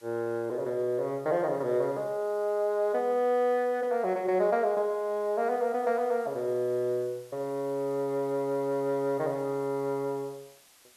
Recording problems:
background hiss; slope 0 dB per octave, SNR 28 dB

